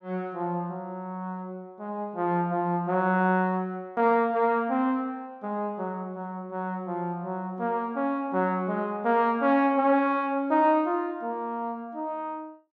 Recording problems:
none

